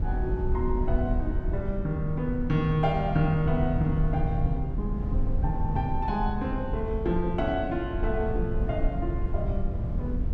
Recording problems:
rumble; below 94 Hz, SNR 2 dB

